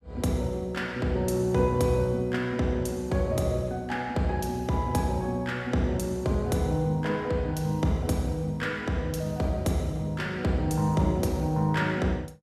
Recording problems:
none

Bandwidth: 14.5 kHz